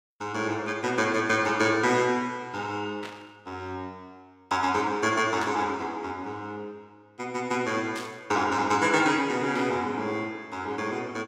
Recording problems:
burst of static; 4 times, first at 3 s; peak -8 dB vs average level

